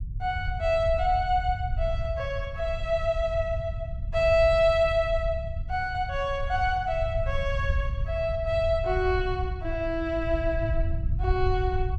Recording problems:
low-frequency rumble; below 86 Hz, SNR 6 dB

